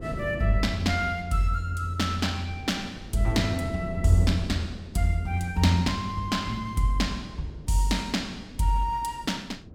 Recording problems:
wind on the microphone; below 280 Hz, SNR 13 dB

